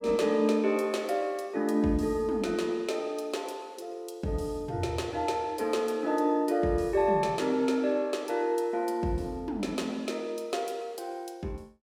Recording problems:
none

